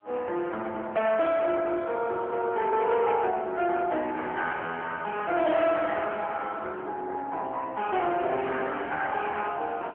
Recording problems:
phone line; 320 Hz to 3.3 kHz, AMR-NB
distortion; soft clipping, signal-to-distortion ratio 12 dB

